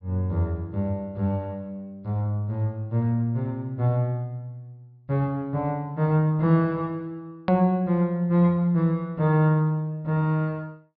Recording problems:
treble missing; nothing above 5 kHz
edit click; at 7.5 s

